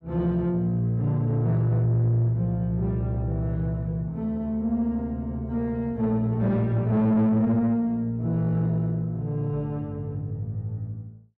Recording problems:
distortion; soft clipping, signal-to-distortion ratio 12 dB

